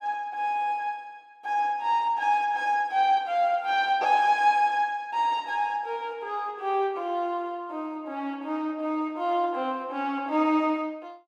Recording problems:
none

